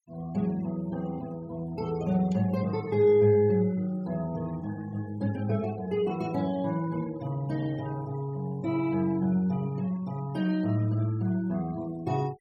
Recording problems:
noise reduction artefacts; signal-to-artefact ratio 23 dB

